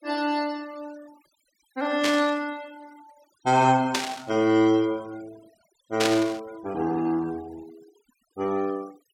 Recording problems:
noise reduction artefacts; signal-to-artefact ratio 23 dB
burst of static; at 2 s, at 4 s and at 6 s; peak +4 dB vs average level

